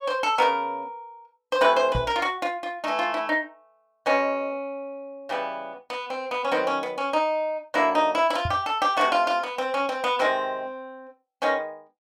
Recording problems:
microphone bump; at 2 s and at 8.5 s; peak -1 dB vs average level

